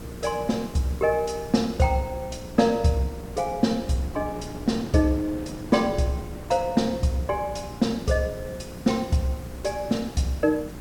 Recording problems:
electrical hum; 60 Hz, harmonics up to 840 Hz, SNR 18 dB
hiss; SNR 23 dB
wind noise; below 420 Hz, SNR 15 dB

